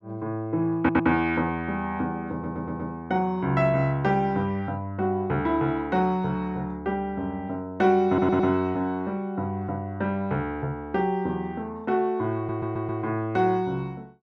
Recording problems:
audio stuttering; 4 times, first at 1 s

